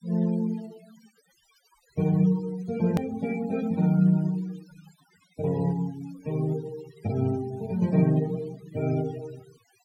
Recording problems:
denoising artefacts; signal-to-artefact ratio 21 dB
hard cut with a click; at 3 s

